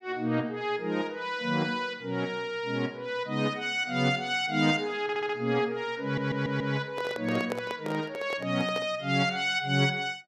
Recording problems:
audio stuttering; at 5 s and at 6 s
handling noise; from 7 to 9 s; peak 0 dB vs average level

